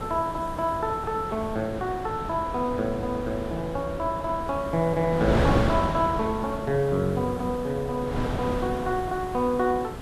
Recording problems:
hiss; slope +3 dB per octave, SNR 27 dB
wind noise; below 690 Hz, SNR 5 dB

